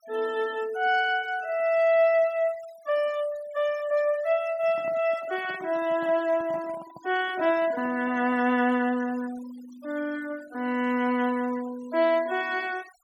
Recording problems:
denoising artefacts; signal-to-artefact ratio 21 dB
handling noise; from 4.5 to 8.5 s; peak -11 dB vs average level

